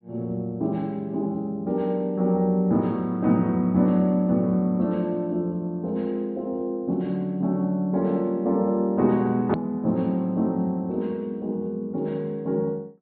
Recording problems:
treble cut off; nothing above 4.3 kHz
hard cut with a click; at 9.5 s

